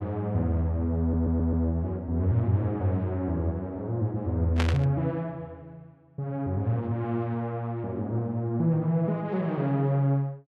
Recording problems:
stutter; at 1 s
burst of static; at 4.5 s; peak +1 dB vs average level

